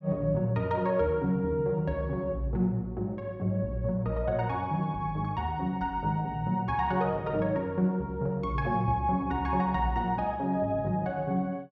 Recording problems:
none

